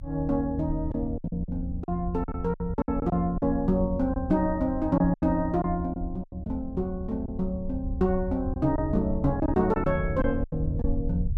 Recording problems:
rumble; below 80 Hz, SNR 8 dB
packet loss; 9% of the sound replaced, filled with silence

